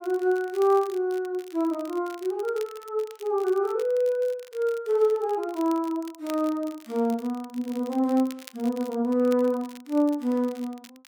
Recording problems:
crackle; vinyl, SNR 23 dB

